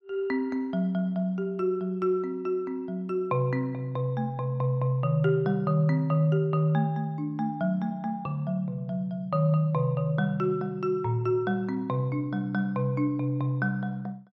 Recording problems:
none

